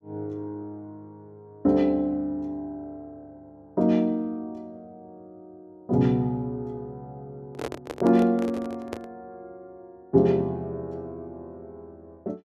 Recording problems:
handling noise; from 7.5 to 9 s; peak -2 dB vs average level

